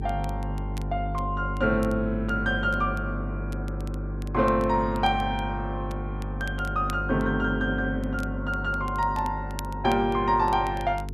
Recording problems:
electrical hum; 50 Hz, harmonics up to 450 Hz, SNR 6 dB
crackling; vinyl, SNR 23 dB

